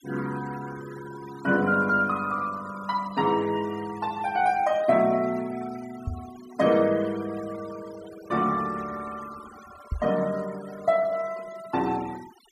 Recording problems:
denoising artefacts; signal-to-artefact ratio 19 dB
knock on the microphone; at 6 s and at 10 s; peak 0 dB vs average level

